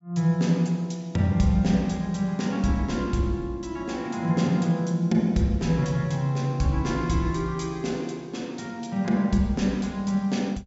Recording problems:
treble missing; nothing above 8 kHz

